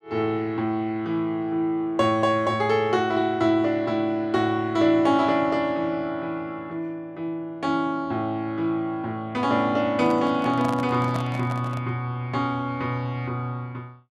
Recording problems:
microphone handling noise; from 10 to 12 s; peak -4 dB vs average level

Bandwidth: 12.5 kHz